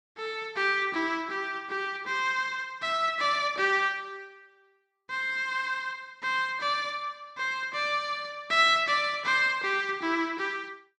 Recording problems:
none

